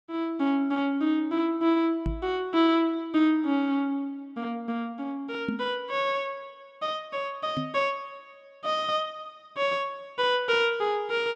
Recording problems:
knock on the microphone; at 2 s, at 5.5 s and at 7.5 s; peak +1 dB vs average level

